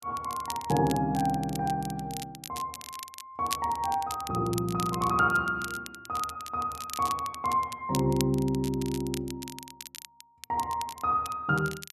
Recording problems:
crackle; vinyl, SNR 13 dB

